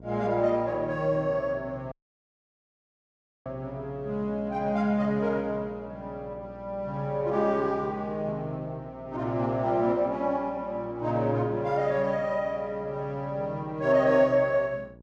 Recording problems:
electrical hum; 60 Hz, harmonics up to 960 Hz, SNR 21 dB
audio cutting out; at 2 s for 1.5 s

